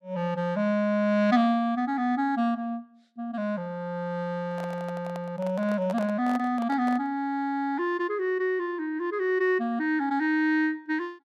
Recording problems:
microphone handling noise; from 4.5 to 7 s; peak -7 dB vs average level

